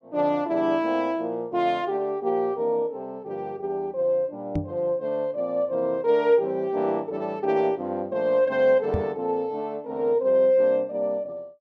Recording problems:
microphone bump; at 4.5 s and at 9 s; peak +1 dB vs average level

